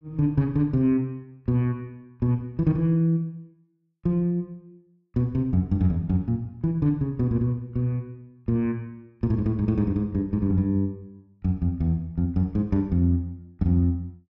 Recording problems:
none

